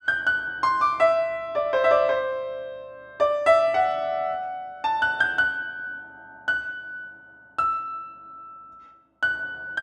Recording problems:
none

